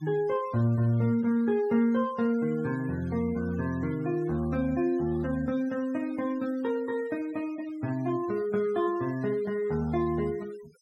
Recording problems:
noise reduction artefacts; signal-to-artefact ratio 23 dB

